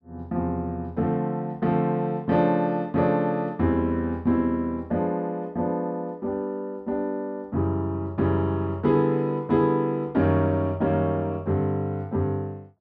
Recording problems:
none

